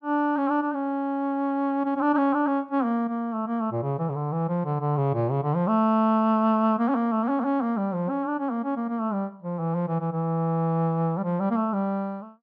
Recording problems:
none

